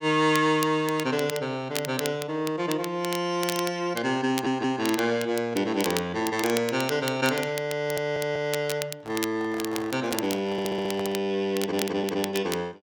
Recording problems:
crackle; vinyl, SNR 10 dB
stutter; 4 times, first at 4.5 s
microphone handling noise; from 9 to 11 s; peak -6 dB vs average level

